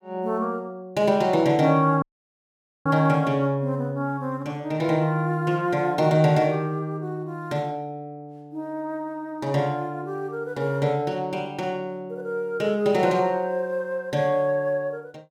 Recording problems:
audio cutting out; at 2 s for 1 s

